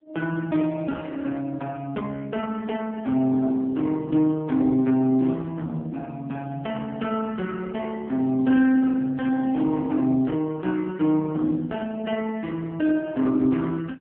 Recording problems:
telephone audio; 170 Hz to 3.8 kHz, AMR-NB

